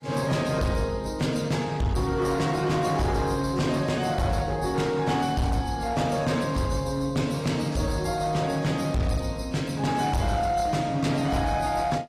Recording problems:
codec artefacts; AAC, log-spectral distance 3 dB, nothing above 15.1 kHz
distortion; hard clipping, uneven, signal-to-distortion ratio 11 dB

